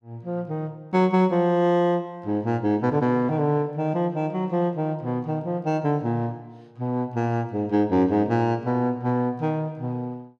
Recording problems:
none

